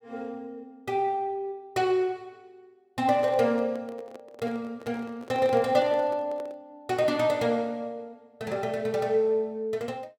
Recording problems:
microphone handling noise; from 3 to 6.5 s; peak -10 dB vs average level

